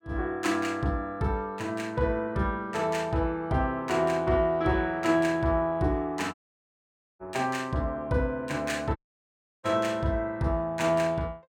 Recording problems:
dropout; at 6.5 s for 1 s and at 9 s for 0.5 s

